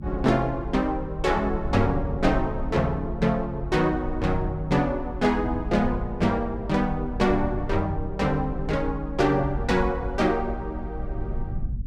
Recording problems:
rumble; below 82 Hz, SNR 9 dB

